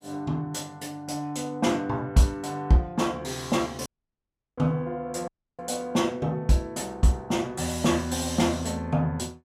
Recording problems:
audio cutting out; at 4 s for 0.5 s and at 5.5 s

